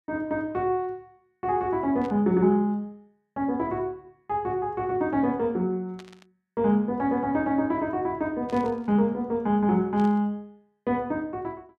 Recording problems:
static burst; 4 times, first at 2 s; peak -15 dB vs average level

